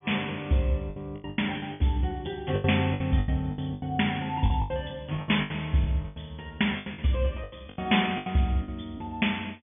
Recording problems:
treble missing; nothing above 3.5 kHz
lost packets; 16% of the sound replaced, filled with the last packet

